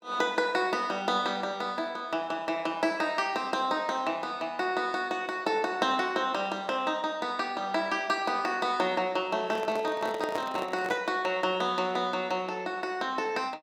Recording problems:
handling noise; from 9.5 to 11 s; peak -1 dB vs average level

